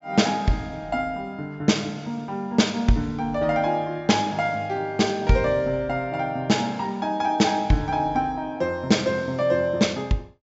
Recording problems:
low-pass filter; nothing above 7.5 kHz

